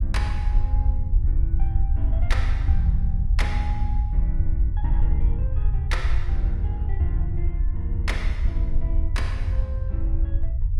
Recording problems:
rumble; below 70 Hz, SNR -9 dB

